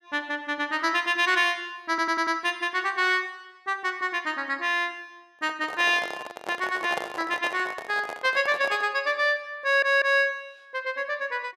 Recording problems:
stutter; at 2 s and at 9.5 s
handling noise; from 5.5 to 9 s; peak -2 dB vs average level

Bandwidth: 13.5 kHz